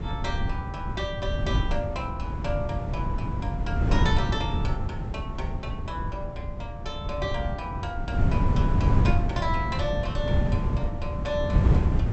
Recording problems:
treble cut off; nothing above 7.9 kHz
hum; 60 Hz, harmonics up to 660 Hz, SNR 18 dB
wind on the microphone; below 150 Hz, SNR -5 dB

